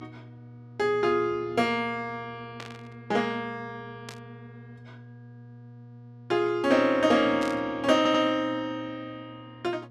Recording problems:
electrical hum; 60 Hz, harmonics up to 960 Hz, SNR 21 dB
burst of static; at 2.5 s, at 4 s and at 7.5 s; peak -10 dB vs average level
stutter; at 8 s

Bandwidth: 14 kHz